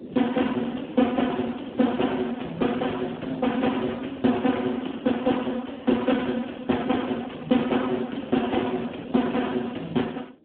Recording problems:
telephone audio; 190 Hz to 3.4 kHz, Speex
wind noise; below 380 Hz, SNR 18 dB

